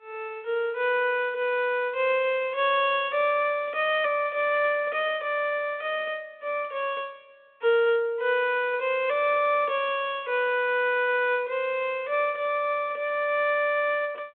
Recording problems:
telephone audio; 260 Hz to 3.5 kHz, G.726

